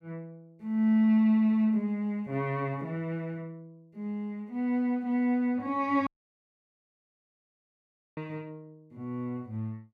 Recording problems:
dropout; at 6 s for 2 s

